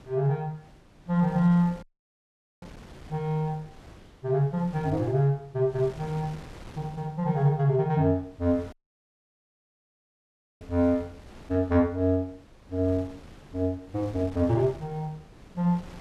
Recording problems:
wind noise; below 670 Hz, SNR 21 dB
audio cutting out; at 2 s for 1 s and at 8.5 s for 2 s

